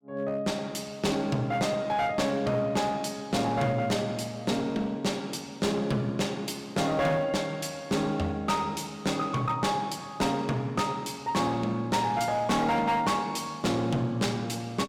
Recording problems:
distorted audio; hard clipping, uneven, signal-to-distortion ratio 10 dB

